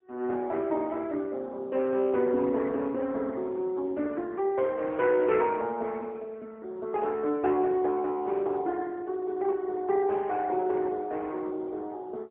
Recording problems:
telephone audio; 240 Hz to 3.2 kHz, AMR-NB, then MP3

